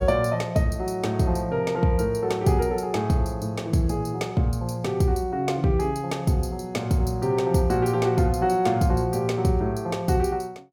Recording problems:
none

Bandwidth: 17.5 kHz